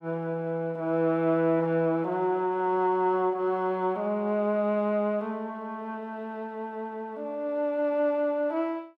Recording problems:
none

